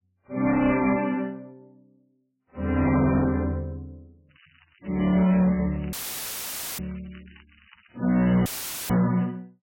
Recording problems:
lossy codec; AAC, then MP3, log-spectral distance 7 dB
distortion; hard clipping, signal-to-distortion ratio 11 dB
crackling; from 4.5 to 8 s; loose cable, SNR 29 dB
audio cutting out; at 6 s for 1 s and at 8.5 s; filled with static

